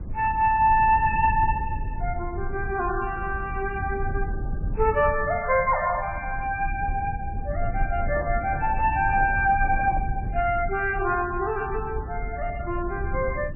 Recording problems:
codec artefacts; MP3, log-spectral distance 2 dB, nothing above 2.4 kHz
low-frequency rumble; below 88 Hz, SNR 8 dB
microphone handling noise; from 8 to 10 s; peak -8 dB vs average level

